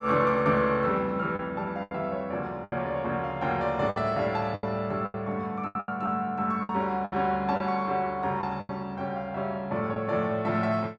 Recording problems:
lost packets; 8% of the sound replaced, filled with the last packet

